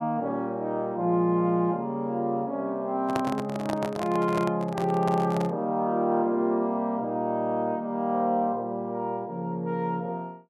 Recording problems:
microphone handling noise; from 3 to 5.5 s; peak 0 dB vs average level

